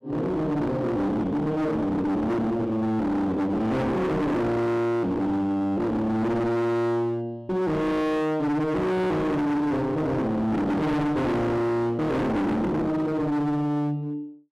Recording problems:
distorted audio; hard clipping, uneven, signal-to-distortion ratio 5 dB

